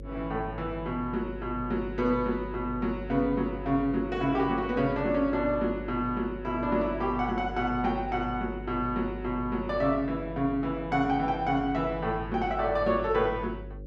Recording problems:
mains hum; 50 Hz, harmonics up to 550 Hz, SNR 13 dB

